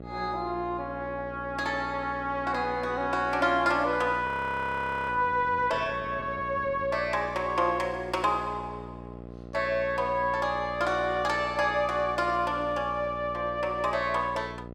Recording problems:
electrical hum; 60 Hz, harmonics up to 1.3 kHz, SNR 14 dB
audio freezing; at 4.5 s for 1 s

